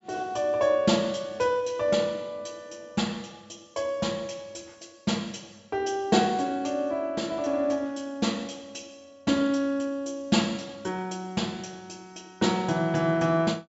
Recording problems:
treble cut off; nothing above 8 kHz

